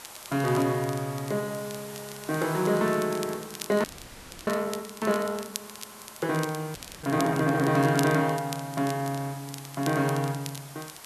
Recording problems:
hiss; SNR 16 dB
crackle; vinyl, SNR 15 dB
audio freezing; at 4 s for 0.5 s and at 7 s

